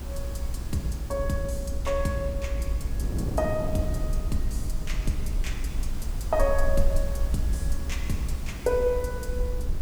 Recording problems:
background hiss; SNR 16 dB
rumble; below 56 Hz, SNR 2 dB
wind noise; below 250 Hz, SNR 7 dB

